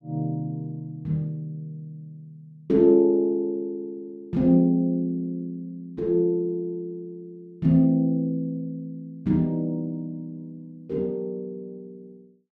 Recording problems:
none

